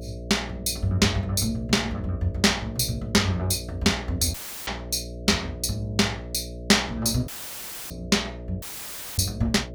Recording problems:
hum; 60 Hz, harmonics up to 660 Hz, SNR 13 dB
dropout; at 4.5 s, at 7.5 s for 0.5 s and at 8.5 s for 0.5 s

